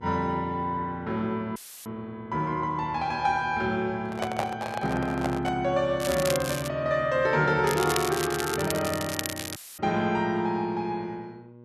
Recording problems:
electrical hum; 60 Hz, harmonics up to 1.1 kHz, SNR 21 dB
dropout; at 1.5 s and at 9.5 s; filled with static
microphone handling noise; from 4 to 5.5 s; peak +2 dB vs average level
crackle; at 6 s and from 7.5 to 9.5 s; loose cable, SNR 6 dB

